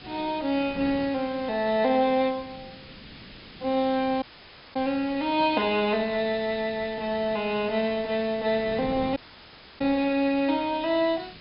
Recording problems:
treble cut off; nothing above 5.5 kHz
hiss; SNR 20 dB
wind noise; below 430 Hz, SNR 20 dB
dropout; at 4 s for 0.5 s and at 9 s for 0.5 s

